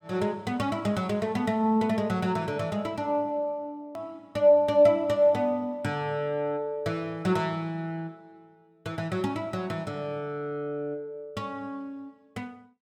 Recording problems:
hard cut with a click; at 4 s

